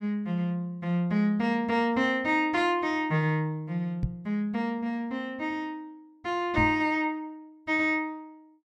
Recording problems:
microphone bump; at 4 s and at 6.5 s; peak +3 dB vs average level

